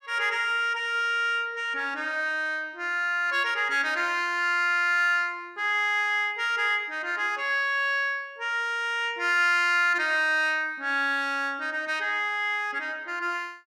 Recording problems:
none

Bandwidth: 14.5 kHz